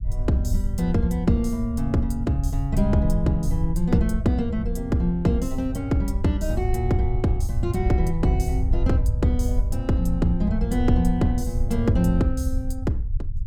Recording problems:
low-frequency rumble; below 78 Hz, SNR 3 dB

